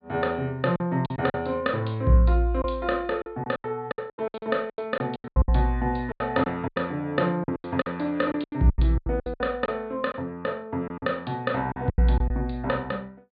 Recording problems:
low-pass filter; nothing above 4.5 kHz
lost packets; 14% of the sound replaced, filled with silence

